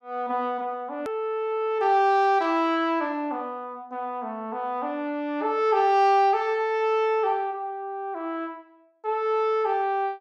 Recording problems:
click at an edit; at 1 s

